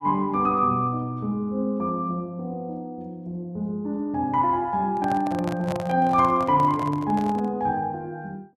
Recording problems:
microphone handling noise; from 5 to 7.5 s; peak -4 dB vs average level

